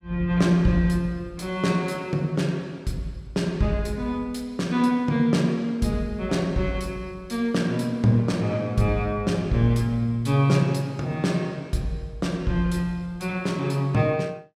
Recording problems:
none

